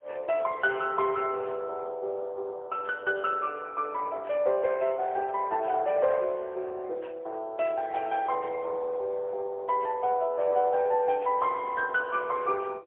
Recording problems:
telephone audio; 340 Hz to 3.2 kHz, AMR-NB, then MP3

